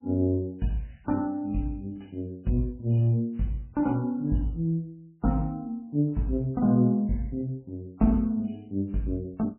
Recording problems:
lossy codec; MP3, log-spectral distance 2 dB, nothing above 2.5 kHz

